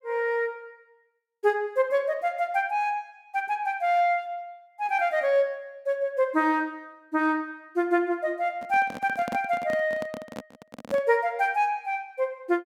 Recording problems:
microphone handling noise; from 8.5 to 11 s; peak -4 dB vs average level

